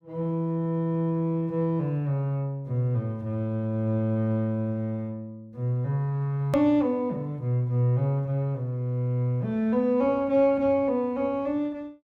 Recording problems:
hard cut with a click; at 6.5 s

